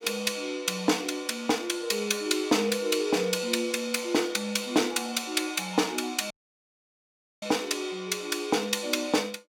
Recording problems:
audio cutting out; at 6.5 s for 1 s

